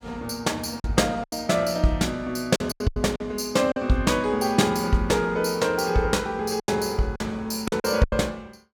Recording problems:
packet loss; 8% of the sound replaced, filled with silence

